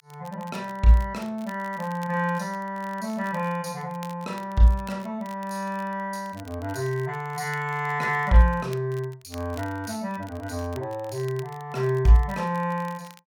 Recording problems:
crackle; vinyl, SNR 24 dB

